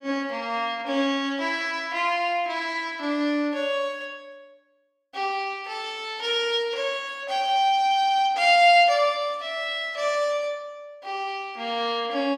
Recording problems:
none

